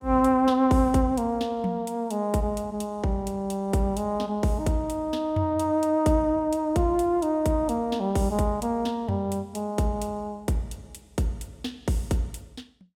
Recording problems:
none

